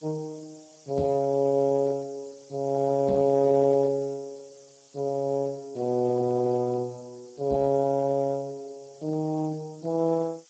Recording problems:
lossy codec; Vorbis, then Speex, log-spectral distance 8 dB
background hiss; slope +5 dB per octave, SNR 29 dB
knock on the microphone; at 1 s, at 3 s and at 7.5 s; peak -1 dB vs average level

